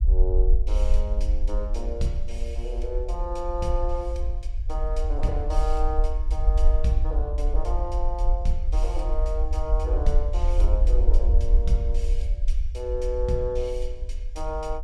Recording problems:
low-frequency rumble; below 50 Hz, SNR -6 dB

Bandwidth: 14.5 kHz